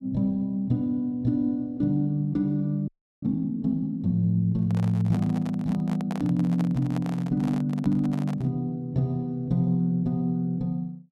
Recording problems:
frozen audio; at 3 s
handling noise; from 4.5 to 8.5 s; peak -7 dB vs average level

